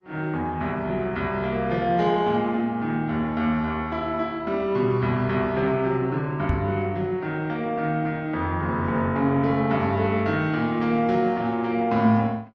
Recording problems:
lossy compression; Opus, log-spectral distance 2 dB
microphone bump; at 6.5 s; peak +2 dB vs average level

